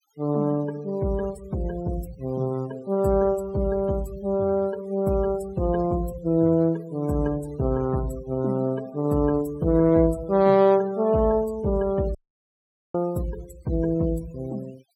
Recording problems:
noise reduction artefacts; signal-to-artefact ratio 22 dB
dropout; at 12 s for 1 s

